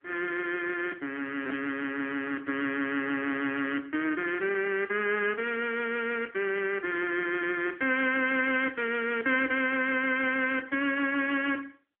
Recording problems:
phone line; 240 Hz to 3.2 kHz, AMR-NB

